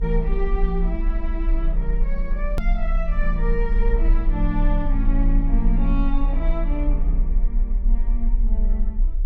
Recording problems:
hum; 60 Hz, harmonics up to 480 Hz, SNR 22 dB
low-frequency rumble; below 36 Hz, strongest tone 32 Hz, SNR -5 dB
click at an edit; at 2.5 s

